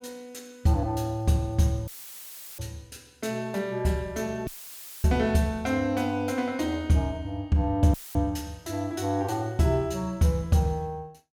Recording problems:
audio cutting out; at 2 s for 0.5 s, at 4.5 s for 0.5 s and at 8 s; filled with static

